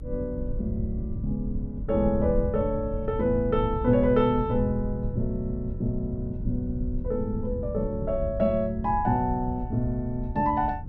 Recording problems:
rumble; below 110 Hz, SNR 10 dB
wind noise; below 110 Hz, SNR 9 dB

